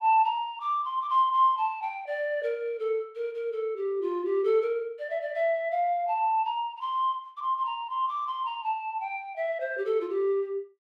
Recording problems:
none

